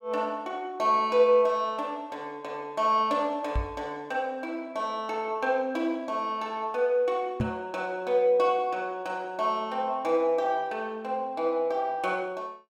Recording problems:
microphone bump; at 3.5 s and at 7.5 s; peak +3 dB vs average level

